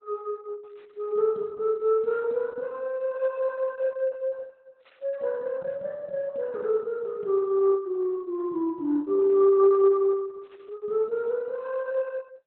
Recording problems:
lossy codec; Opus, log-spectral distance 2 dB, nothing above 3.9 kHz

